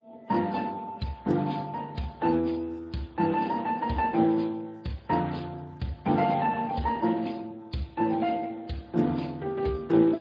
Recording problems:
lossy codec; MP3, then Speex, log-spectral distance 3 dB

